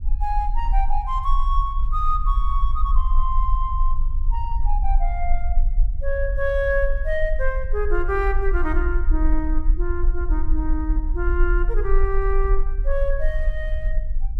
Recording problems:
rumble; below 42 Hz, strongest tone 20 Hz, SNR -2 dB

